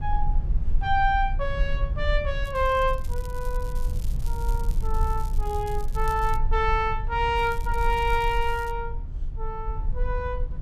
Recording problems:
low-frequency rumble; below 50 Hz, strongest tone 20 Hz, SNR 3 dB
crackle; from 2.5 to 6.5 s and from 7.5 to 8.5 s; loose cable, SNR 21 dB

